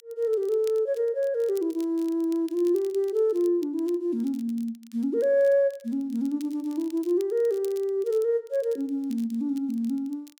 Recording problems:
crackle; vinyl, SNR 26 dB

